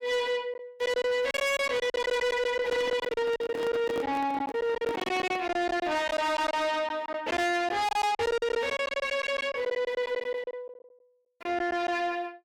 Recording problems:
distorted audio; soft clipping, signal-to-distortion ratio 8 dB
packet loss; 13% of the sound replaced, filled with silence
microphone handling noise; from 2.5 to 5.5 s; peak -2 dB vs average level

